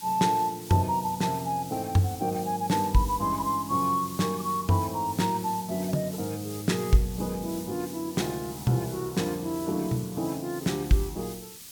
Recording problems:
background hiss; SNR 14 dB

